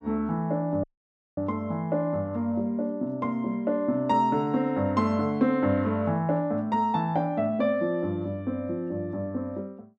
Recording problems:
dropout; at 1 s for 0.5 s

